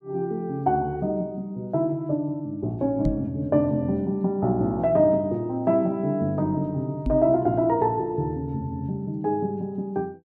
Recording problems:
knock on the microphone; at 3 s and at 7 s; peak +2 dB vs average level

